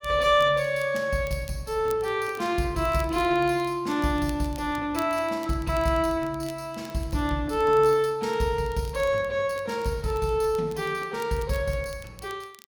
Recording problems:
crackle; vinyl, SNR 24 dB

